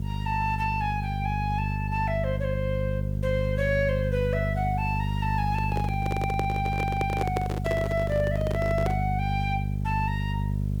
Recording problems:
hum; 50 Hz, harmonics up to 450 Hz, SNR 0 dB
hiss; slope -2 dB per octave, SNR 29 dB
handling noise; from 5.5 to 9 s; peak +3 dB vs average level

